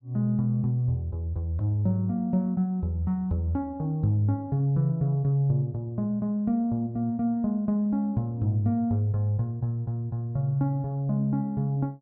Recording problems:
none

